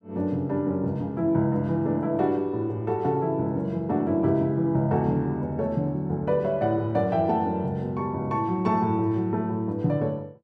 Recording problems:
none

